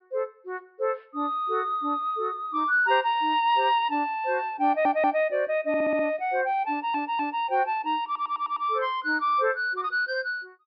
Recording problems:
treble missing; nothing above 5.3 kHz
audio stuttering; 4 times, first at 4.5 s

